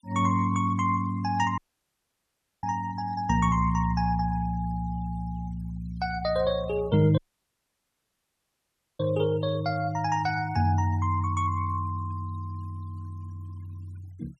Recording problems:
denoising artefacts; signal-to-artefact ratio 24 dB
audio cutting out; at 1.5 s for 1 s and at 7 s for 2 s

